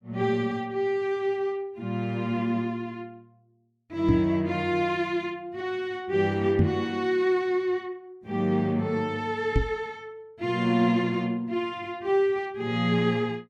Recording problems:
microphone bump; at 4 s, at 6.5 s and at 9.5 s; peak +7 dB vs average level

